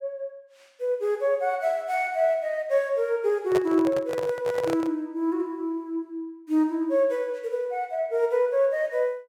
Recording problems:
handling noise; from 3.5 to 5 s; peak 0 dB vs average level

